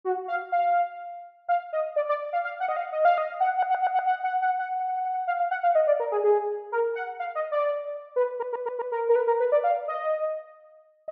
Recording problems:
stutter; at 3.5 s, at 4.5 s and at 8.5 s

